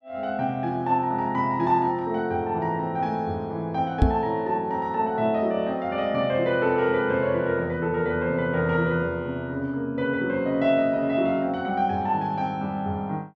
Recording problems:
microphone thump; at 4 s; peak +9 dB vs average level

